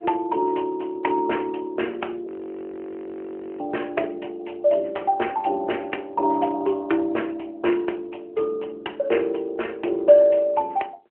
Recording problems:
telephone audio; 280 Hz to 3.1 kHz, AMR-NB
frozen audio; at 2.5 s for 1.5 s

